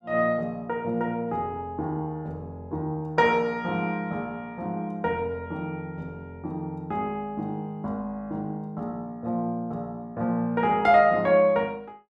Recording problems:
none

